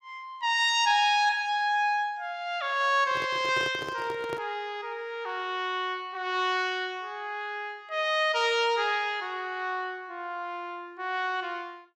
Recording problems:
handling noise; from 3 to 4.5 s; peak -5 dB vs average level

